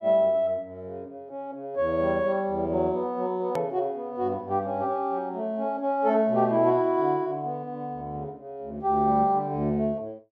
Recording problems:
edit click; at 3.5 s

